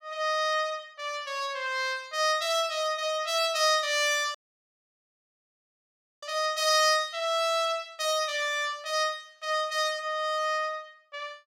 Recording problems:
audio cutting out; at 4.5 s for 2 s

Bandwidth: 16.5 kHz